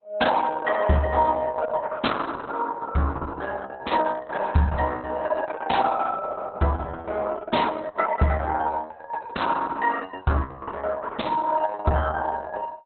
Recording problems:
codec artefacts; Opus, log-spectral distance 4 dB, nothing above 4.1 kHz

